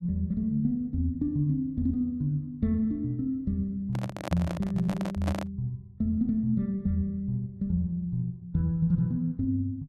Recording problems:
microphone handling noise; from 4 to 5.5 s; peak 0 dB vs average level

